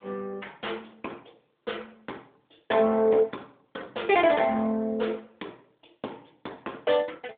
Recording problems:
phone line; 280 Hz to 3.6 kHz, AMR-NB
distortion; soft clipping, signal-to-distortion ratio 15 dB

